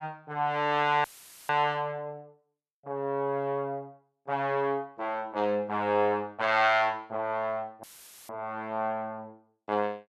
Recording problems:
dropout; at 1 s and at 8 s; filled with static

